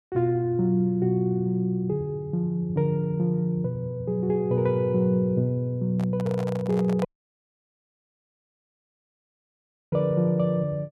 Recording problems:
microphone handling noise; from 6 to 7 s; peak -6 dB vs average level
dropout; at 7 s for 3 s

